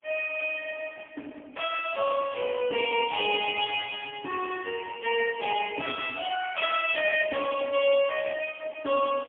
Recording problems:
telephone audio; 260 Hz to 3.3 kHz, AMR-NB, then MP3

